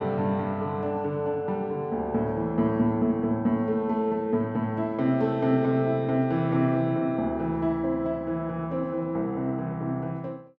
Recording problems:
none

